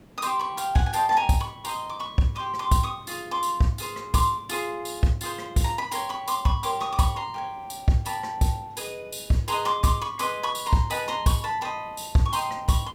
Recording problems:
hiss; slope -7 dB per octave, SNR 25 dB

